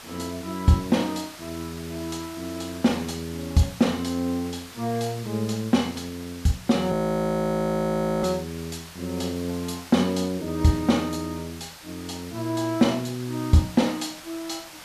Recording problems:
hiss; SNR 16 dB
frozen audio; at 7 s for 1.5 s

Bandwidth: 14.5 kHz